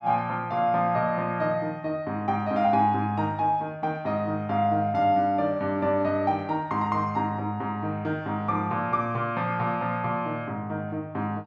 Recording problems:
none

